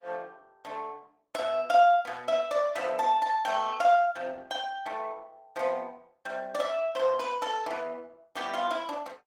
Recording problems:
codec artefacts; Opus, log-spectral distance 3 dB, nothing above 19 kHz

